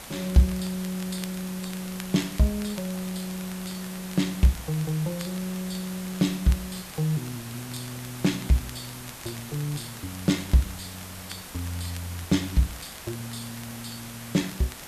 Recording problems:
hiss; slope -2 dB per octave, SNR 11 dB
crackling; vinyl, SNR 19 dB

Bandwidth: 14 kHz